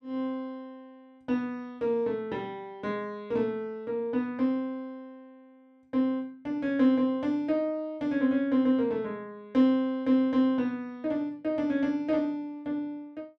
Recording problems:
none

